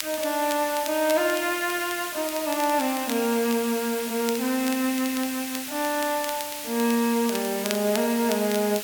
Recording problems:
hiss; slope +2 dB per octave, SNR 7 dB
crackle; vinyl, SNR 14 dB

